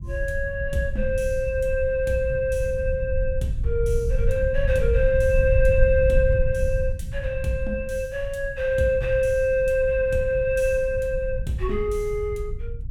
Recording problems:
low-frequency rumble; below 78 Hz, SNR 5 dB

